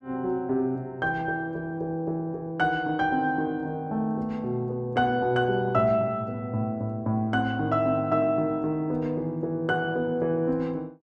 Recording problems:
none

